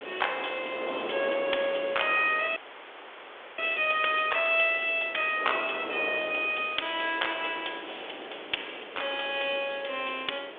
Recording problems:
telephone audio; 320 Hz to 3.5 kHz, G.726
background hiss; SNR 18 dB
wind on the microphone; below 920 Hz, SNR 13 dB
audio freezing; at 2.5 s for 1 s

